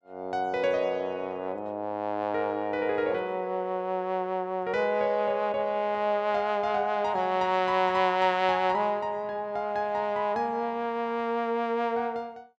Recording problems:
none

